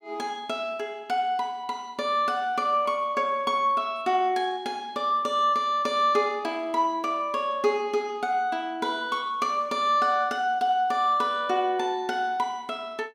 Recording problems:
none

